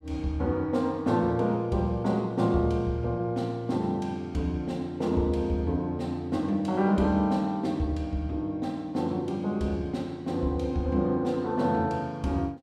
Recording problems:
none

